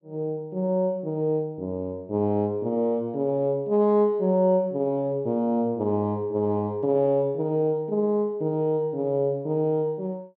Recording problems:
none

